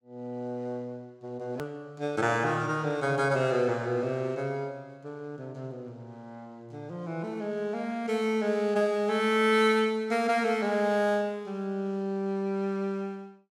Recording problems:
edit click; at 1.5 s

